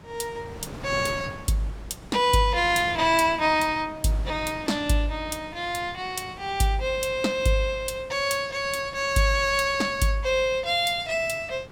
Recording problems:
wind on the microphone; below 800 Hz, SNR 17 dB

